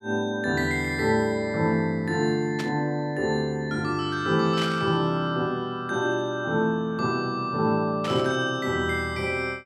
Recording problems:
burst of static; at 2.5 s, at 4.5 s and at 8 s; peak -5 dB vs average level

